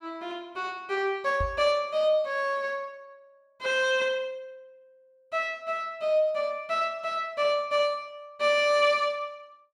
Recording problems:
microphone thump; at 1.5 s; peak -2 dB vs average level

